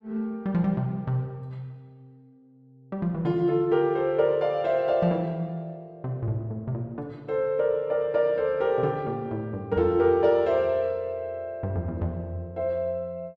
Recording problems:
none

